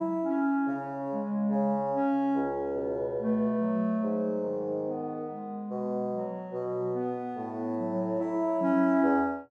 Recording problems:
none

